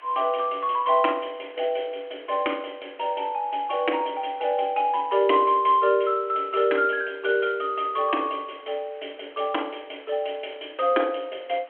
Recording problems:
phone line; 260 Hz to 3.3 kHz, G.726
hiss; SNR 27 dB

